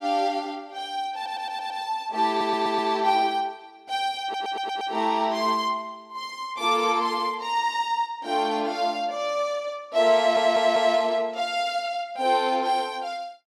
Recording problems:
stutter; 4 times, first at 1 s

